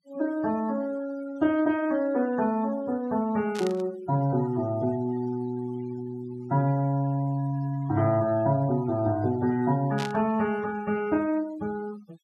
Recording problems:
noise reduction artefacts; signal-to-artefact ratio 21 dB
static burst; at 3.5 s and at 10 s; peak -6 dB vs average level

